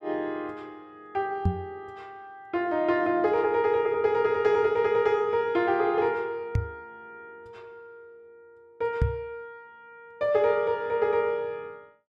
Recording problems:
microphone thump; at 1.5 s, at 6.5 s and at 9 s; peak +5 dB vs average level

